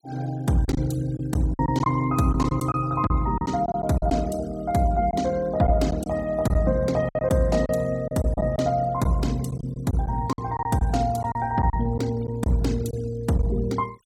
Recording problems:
noise reduction artefacts; signal-to-artefact ratio 22 dB
lost packets; 8% of the sound replaced, filled with silence

